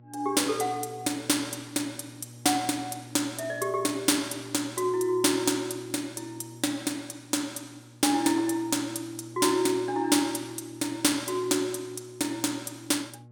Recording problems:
hum; 60 Hz, harmonics up to 840 Hz, SNR 21 dB

